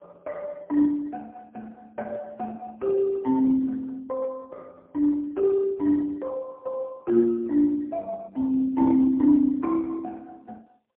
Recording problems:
telephone audio; 220 Hz to 2.2 kHz, AMR-NB, then MP3

